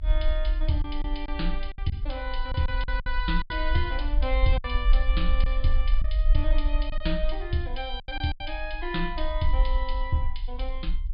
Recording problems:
treble cut off; nothing above 4.8 kHz
rumble; below 46 Hz, strongest tone 22 Hz, SNR -2 dB
packet loss; 6% of the sound replaced, filled with silence

